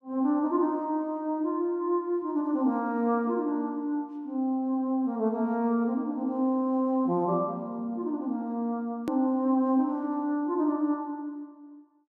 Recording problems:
click at an edit; at 9 s

